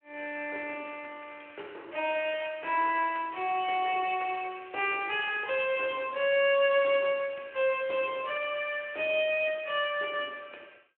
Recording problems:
telephone audio; 340 Hz to 3.2 kHz, Speex

